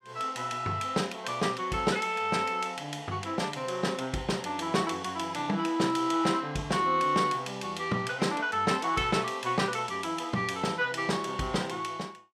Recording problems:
none

